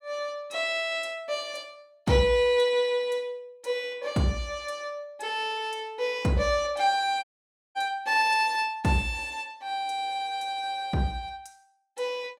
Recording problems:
dropout; at 7 s for 0.5 s

